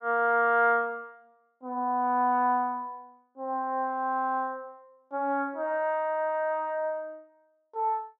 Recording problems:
none

